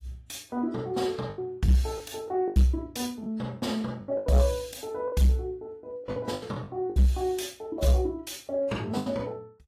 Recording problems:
lossy codec; AAC, log-spectral distance 2 dB, nothing above 15.1 kHz
distorted audio; soft clipping, signal-to-distortion ratio 11 dB
lost packets; 9% of the sound replaced, filled with the last packet

